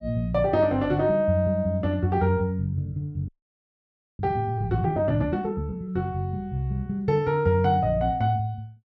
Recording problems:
frozen audio; at 3.5 s for 1 s

